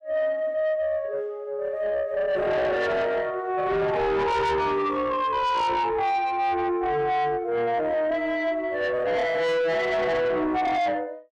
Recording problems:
distorted audio; soft clipping, signal-to-distortion ratio 7 dB

